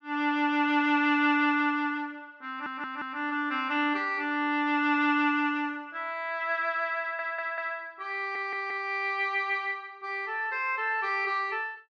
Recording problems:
stutter; at 2.5 s, at 7 s and at 8 s

